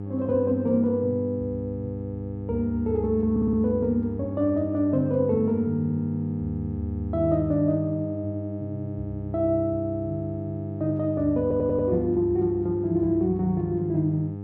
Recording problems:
mains hum; 50 Hz, harmonics up to 800 Hz, SNR 8 dB
audio stuttering; at 3.5 s and at 11 s

